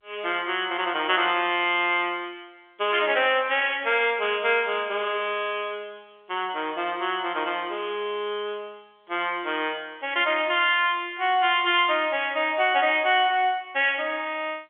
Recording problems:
telephone audio; 280 Hz to 3.5 kHz, G.711

